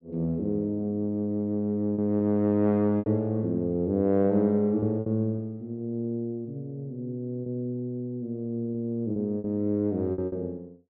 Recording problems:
packet loss; 5% of the sound replaced, filled with repeated pitch periods

